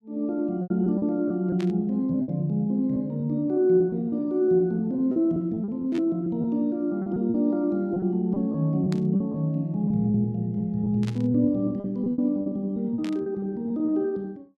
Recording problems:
packet loss; 9% of the sound replaced, filled with repeated pitch periods
static burst; 5 times, first at 1.5 s; peak -11 dB vs average level

